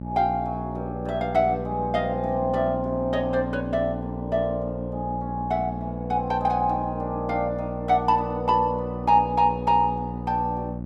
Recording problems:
electrical hum; 60 Hz, harmonics up to 900 Hz, SNR 8 dB

